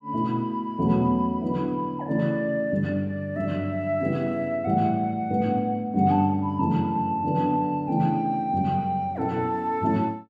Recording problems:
none

